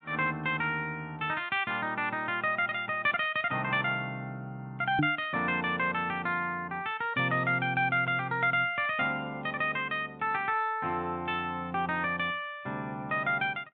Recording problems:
treble cut off; nothing above 4 kHz
microphone bump; at 5 s; peak +4 dB vs average level

